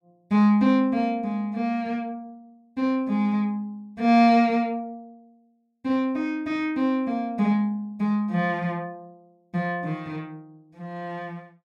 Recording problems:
none

